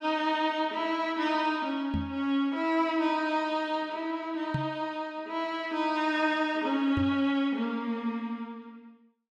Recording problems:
knock on the microphone; at 2 s, at 4.5 s and at 7 s; peak +2 dB vs average level

